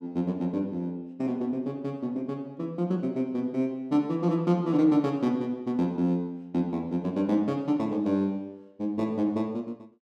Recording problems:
none

